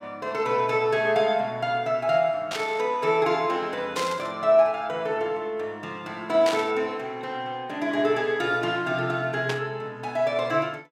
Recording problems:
static burst; 4 times, first at 2.5 s; peak -1 dB vs average level

